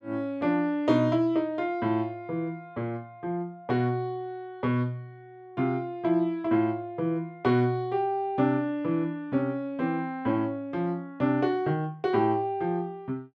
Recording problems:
none

